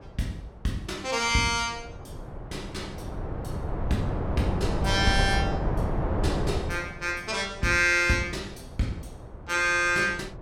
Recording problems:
wind on the microphone; below 420 Hz, SNR 4 dB

